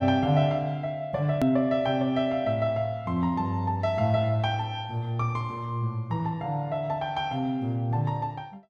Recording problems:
hard cut with a click; at 1.5 s

